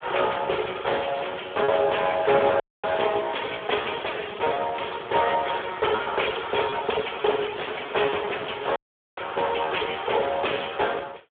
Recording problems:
phone line; 340 Hz to 3.5 kHz, Speex
lost packets; 2% of the sound replaced, filled with repeated pitch periods
dropout; at 2.5 s and at 9 s

